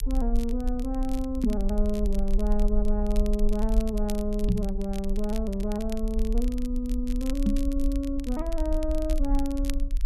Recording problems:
low-frequency rumble; below 44 Hz, SNR 1 dB
crackle; vinyl, SNR 17 dB
knock on the microphone; at 1.5 s, at 4.5 s and at 7.5 s; peak +8 dB vs average level

